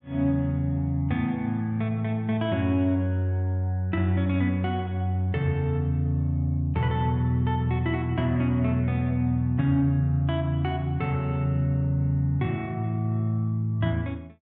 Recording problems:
none

